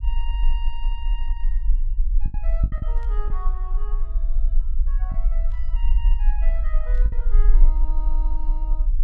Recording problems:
low-frequency rumble; below 38 Hz, strongest tone 26 Hz, SNR -17 dB
packet loss; 4% of the sound replaced, filled with the last packet
burst of static; at 3 s, at 5.5 s and at 7 s; peak -10 dB vs average level

